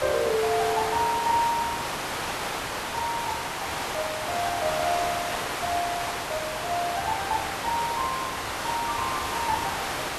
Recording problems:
hiss; SNR 1 dB

